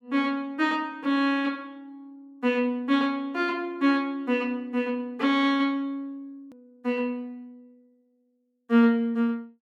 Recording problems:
click at an edit; at 6.5 s

